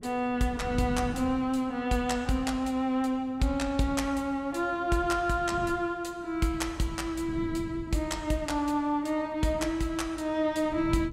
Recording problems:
wind noise; below 200 Hz, SNR 16 dB

